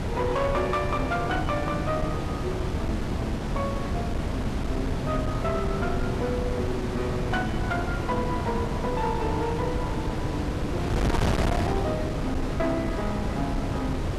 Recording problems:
distorted audio; hard clipping, signal-to-distortion ratio 11 dB
wind noise; below 430 Hz, SNR -1 dB

